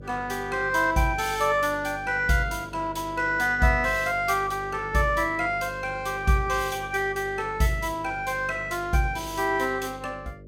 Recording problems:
hum; 50 Hz, harmonics up to 600 Hz, SNR 17 dB

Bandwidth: 17 kHz